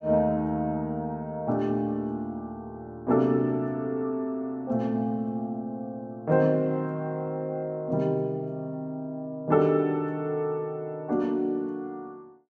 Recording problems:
none

